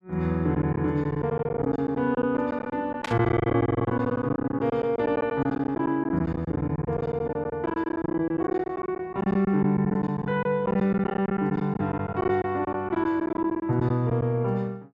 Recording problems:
lost packets; 15% of the sound replaced, filled with silence
static burst; at 3 s; peak -2 dB vs average level

